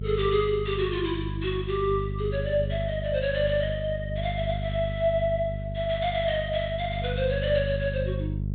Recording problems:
low-pass filter; nothing above 4 kHz
mains hum; 50 Hz, harmonics up to 450 Hz, SNR 5 dB

